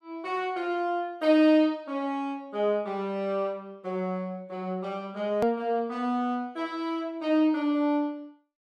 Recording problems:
edit click; at 5.5 s

